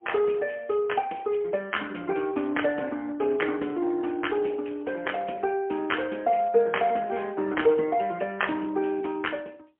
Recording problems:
phone line; 260 Hz to 3.2 kHz, AMR-NB, then MP3

